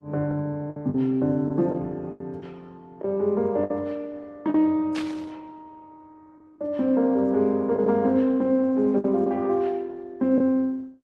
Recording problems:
lossy codec; Opus, then AAC, log-spectral distance 2 dB
lost packets; 5% of the sound replaced, filled with the last packet
burst of static; at 5 s; peak -6 dB vs average level

